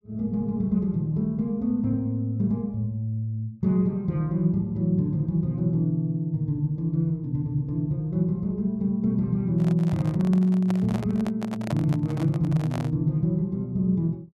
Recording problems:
microphone handling noise; from 9.5 to 13 s; peak -4 dB vs average level

